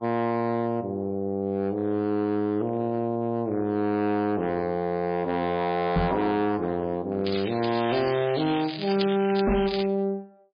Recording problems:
codec artefacts; MP3, log-spectral distance 5 dB, nothing above 4.2 kHz
distortion; hard clipping, signal-to-distortion ratio 11 dB
microphone thump; at 6 s and at 9.5 s; peak +6 dB vs average level
crackle; from 7.5 to 10 s; loose cable, SNR 9 dB

